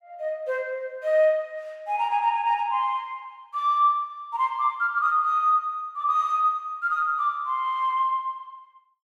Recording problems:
none

